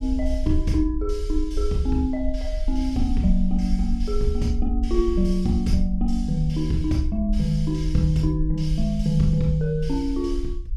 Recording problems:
low-frequency rumble; below 52 Hz, SNR 5 dB

